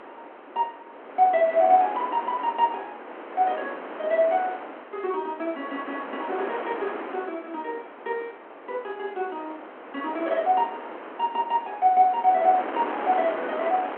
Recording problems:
telephone audio; 240 Hz to 3.3 kHz, G.726
wind on the microphone; below 1.3 kHz, SNR 11 dB

